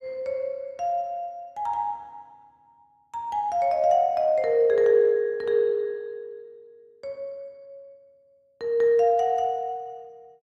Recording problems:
none

